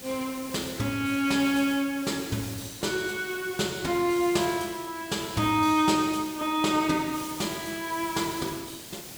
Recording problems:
hiss; SNR 13 dB

